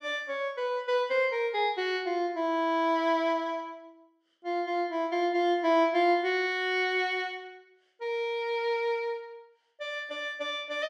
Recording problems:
none

